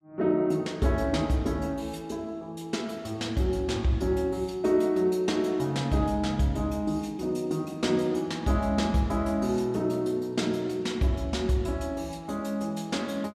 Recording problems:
none

